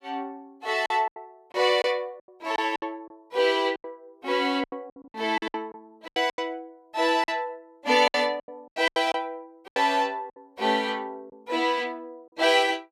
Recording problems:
packet loss; 13% of the sound replaced, filled with silence

